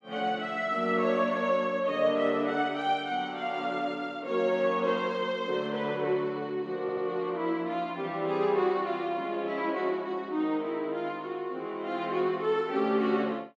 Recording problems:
stutter; at 7 s

